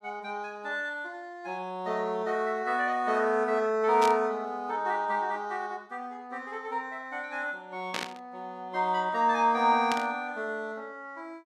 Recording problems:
static burst; at 4 s, at 8 s and at 10 s; peak +1 dB vs average level

